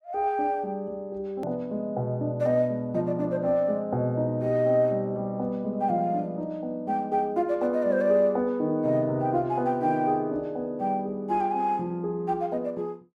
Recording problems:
edit click; at 1.5 s

